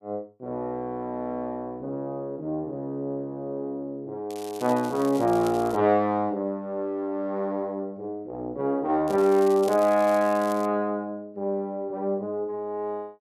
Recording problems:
crackle; from 4.5 to 6 s and from 9 to 11 s; loose cable, SNR 18 dB

